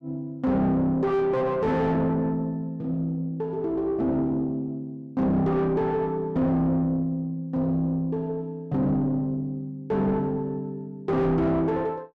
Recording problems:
distorted audio; soft clipping, signal-to-distortion ratio 6 dB

